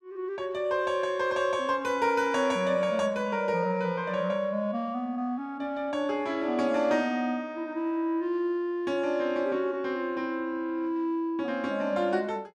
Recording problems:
none

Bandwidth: 12.5 kHz